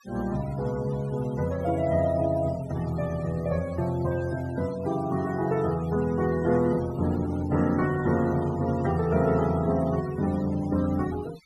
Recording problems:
noise reduction artefacts; signal-to-artefact ratio 18 dB

